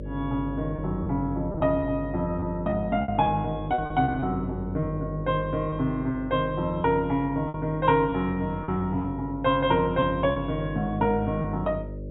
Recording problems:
treble missing; nothing above 4 kHz
mains hum; 50 Hz, harmonics up to 600 Hz, SNR 10 dB
lost packets; 6% of the sound replaced, filled with repeated pitch periods

